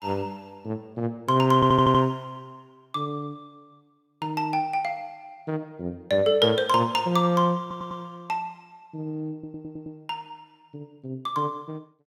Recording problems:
stutter; at 1.5 s, at 7.5 s and at 9.5 s

